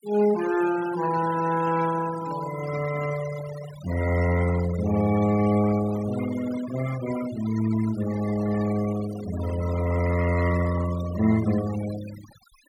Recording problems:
noise reduction artefacts; signal-to-artefact ratio 13 dB

